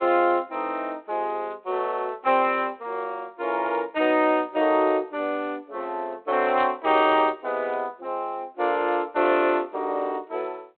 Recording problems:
telephone audio; 280 Hz to 3.4 kHz, G.726

